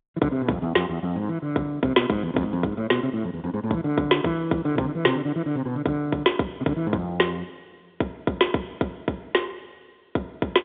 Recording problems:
telephone audio; 190 Hz to 3.6 kHz, G.711

